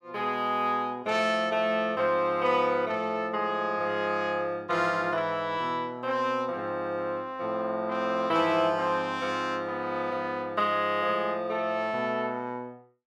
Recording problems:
none

